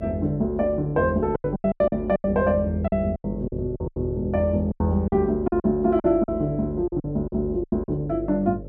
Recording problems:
hum; 50 Hz, harmonics up to 600 Hz, SNR 13 dB
packet loss; 13% of the sound replaced, filled with silence

